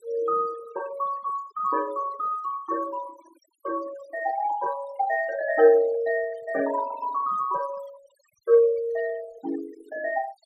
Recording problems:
noise reduction artefacts; signal-to-artefact ratio 17 dB

